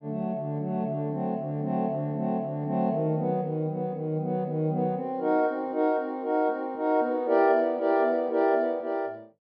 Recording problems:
treble missing; nothing above 5.5 kHz

